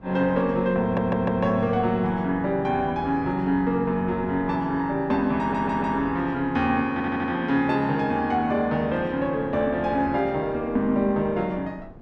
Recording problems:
wind on the microphone; below 390 Hz, SNR 19 dB
audio stuttering; at 1 s, at 5.5 s and at 7 s

